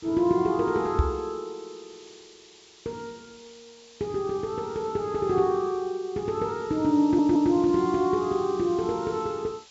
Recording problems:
treble cut off; nothing above 8 kHz
background hiss; SNR 24 dB
microphone thump; at 1 s; peak +6 dB vs average level
stutter; at 7 s

